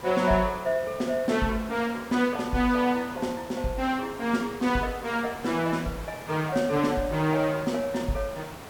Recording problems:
background hiss; SNR 15 dB

